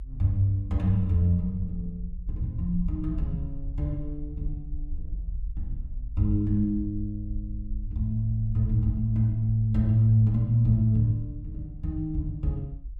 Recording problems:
rumble; below 54 Hz, SNR 12 dB

